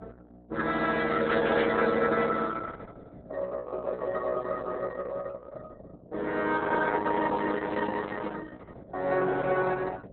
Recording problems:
lossy compression; Opus, log-spectral distance 4 dB, nothing above 4 kHz
electrical hum; 60 Hz, harmonics up to 720 Hz, SNR 22 dB

